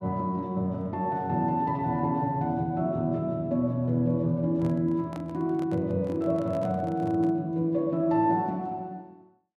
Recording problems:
microphone handling noise; from 4.5 to 7.5 s; peak -11 dB vs average level

